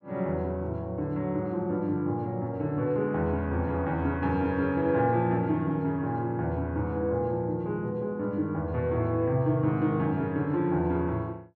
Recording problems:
none

